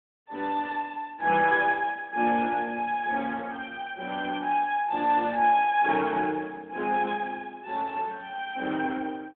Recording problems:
telephone audio; 190 Hz to 3.5 kHz, AMR-NB

